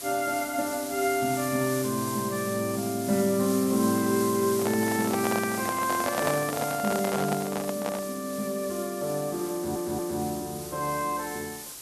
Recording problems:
background hiss; SNR 8 dB
handling noise; from 4.5 to 8 s; peak +3 dB vs average level
audio stuttering; at 9.5 s

